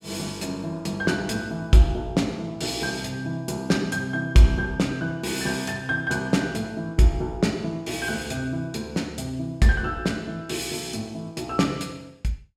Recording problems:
none

